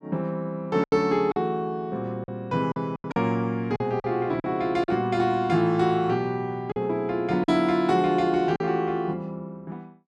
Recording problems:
packet loss; 6% of the sound replaced, filled with silence

